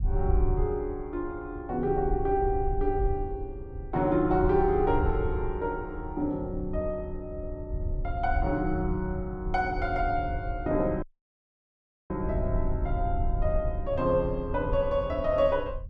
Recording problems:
rumble; below 78 Hz, SNR 6 dB
dropout; at 11 s for 1 s

